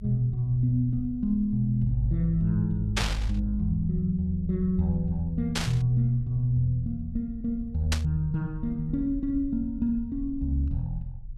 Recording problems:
rumble; below 72 Hz, SNR 13 dB
burst of static; at 3 s, at 5.5 s and at 8 s; peak +4 dB vs average level

